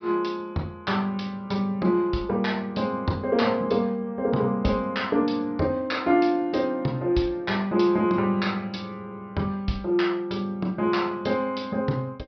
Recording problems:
treble missing; nothing above 5.5 kHz

